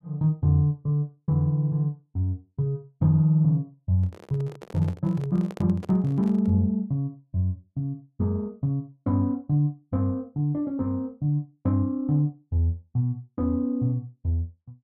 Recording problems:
microphone handling noise; from 4 to 6.5 s; peak -9 dB vs average level

